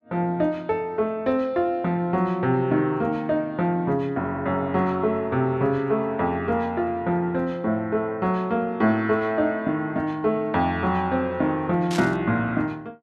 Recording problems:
static burst; at 12 s; peak -5 dB vs average level

